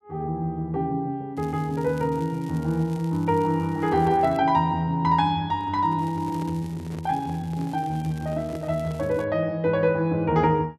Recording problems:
crackling; from 1.5 to 4.5 s and from 6 to 9 s; loose cable, SNR 26 dB
microphone handling noise; from 5.5 to 9 s; peak -11 dB vs average level

